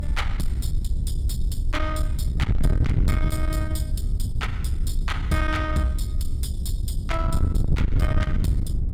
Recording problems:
distortion; soft clipping, signal-to-distortion ratio 11 dB
electrical hum; 50 Hz, harmonics up to 400 Hz, SNR 10 dB
low-frequency rumble; below 66 Hz, SNR 2 dB
wind on the microphone; below 110 Hz, SNR -3 dB

